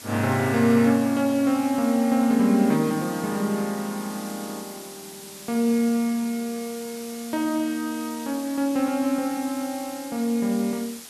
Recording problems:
background hiss; slope 0 dB per octave, SNR 15 dB

